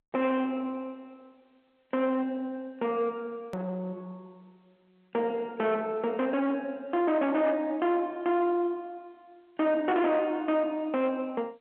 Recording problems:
phone line; 280 Hz to 3.7 kHz, G.711
distorted audio; soft clipping, signal-to-distortion ratio 9 dB
hard cut with a click; at 3.5 s

